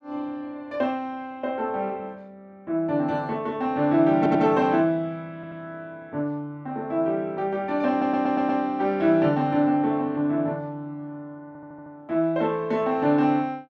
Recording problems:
audio stuttering; 4 times, first at 4 s

